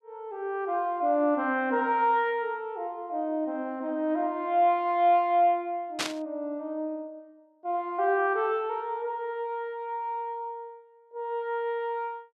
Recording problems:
static burst; at 6 s; peak +3 dB vs average level

